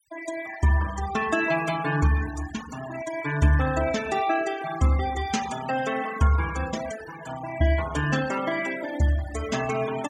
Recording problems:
noise reduction artefacts; signal-to-artefact ratio 12 dB

